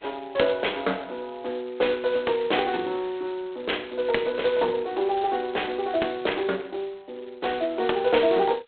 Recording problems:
phone line; 320 Hz to 3.6 kHz, G.726

